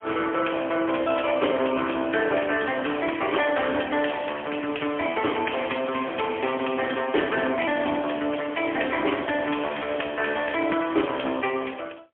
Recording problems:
telephone audio; 220 Hz to 3.3 kHz, AMR-NB, then MP3

